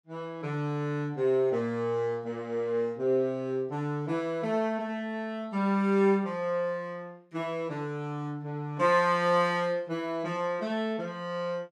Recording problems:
none

